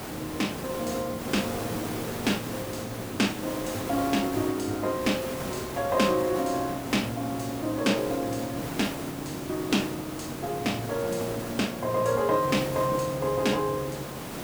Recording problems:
background hiss; slope -5 dB per octave, SNR 7 dB

